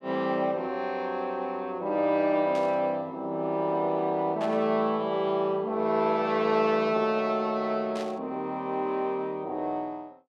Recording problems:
static burst; at 2.5 s, at 4.5 s and at 8 s; peak -11 dB vs average level

